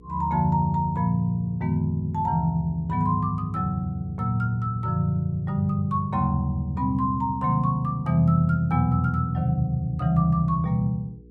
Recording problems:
electrical hum; 60 Hz, harmonics up to 480 Hz, SNR 25 dB

